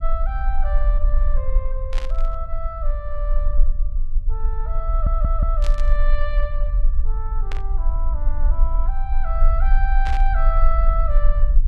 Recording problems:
low-frequency rumble; below 42 Hz, strongest tone 24 Hz, SNR -8 dB
burst of static; 4 times, first at 2 s; peak +1 dB vs average level
stutter; at 5 s

